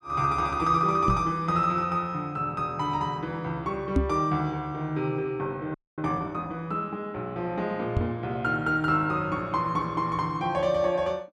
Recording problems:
microphone thump; at 1 s, at 4 s and at 8 s; peak +7 dB vs average level
frozen audio; at 5.5 s

